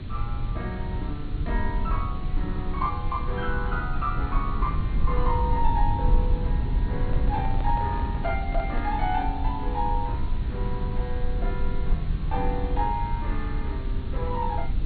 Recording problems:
low-pass filter; nothing above 4.4 kHz
electrical hum; 50 Hz, harmonics up to 450 Hz, SNR 20 dB
hiss; SNR 17 dB
rumble; below 72 Hz, SNR -2 dB
microphone handling noise; from 7 to 9 s; peak -3 dB vs average level

